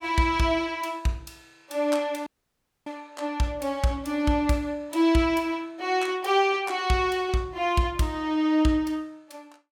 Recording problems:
dropout; at 2.5 s for 0.5 s

